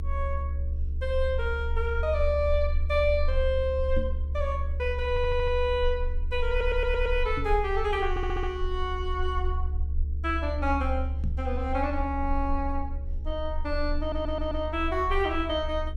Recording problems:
hum; 60 Hz, harmonics up to 480 Hz, SNR 17 dB
rumble; below 72 Hz, strongest tone 26 Hz, SNR 3 dB
microphone bump; at 4 s, at 7.5 s and at 11 s; peak -1 dB vs average level
audio stuttering; 4 times, first at 5 s

